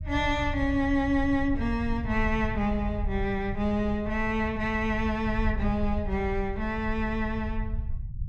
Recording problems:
low-frequency rumble; below 86 Hz, SNR 7 dB

